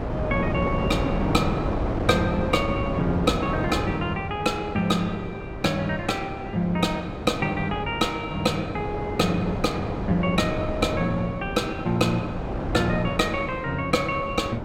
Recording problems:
wind noise; below 570 Hz, SNR 5 dB

